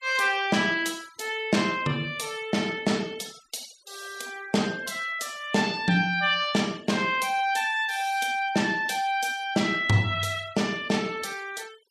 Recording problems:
denoising artefacts; signal-to-artefact ratio 21 dB

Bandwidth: 14 kHz